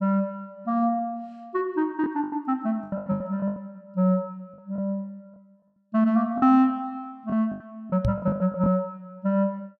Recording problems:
packet loss; 9% of the sound replaced, filled with the last packet
knock on the microphone; at 8 s; peak +4 dB vs average level

